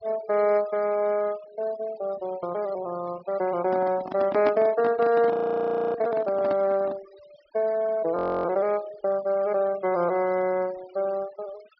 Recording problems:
low-pass filter; nothing above 5.5 kHz
noise reduction artefacts; signal-to-artefact ratio 21 dB
microphone handling noise; from 3.5 to 7 s; peak -2 dB vs average level
audio freezing; at 5.5 s for 0.5 s and at 8 s

